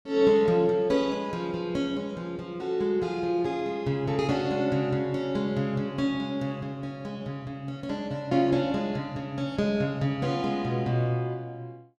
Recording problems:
none

